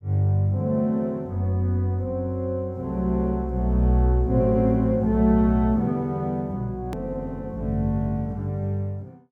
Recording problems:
hard cut with a click; at 7 s

